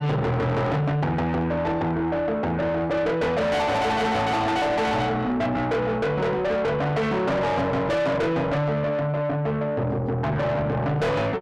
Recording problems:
distortion; soft clipping, signal-to-distortion ratio 6 dB

